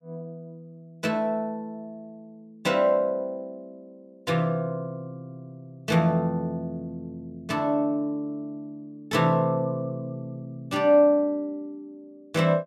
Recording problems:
none

